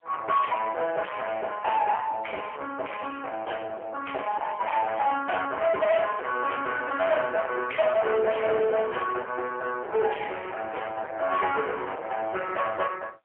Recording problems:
telephone audio; 340 Hz to 3.2 kHz, AMR-NB, then MP3
distorted audio; soft clipping, signal-to-distortion ratio 8 dB

